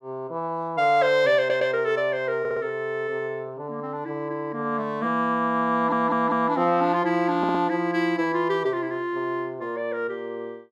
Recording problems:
audio stuttering; 4 times, first at 1.5 s

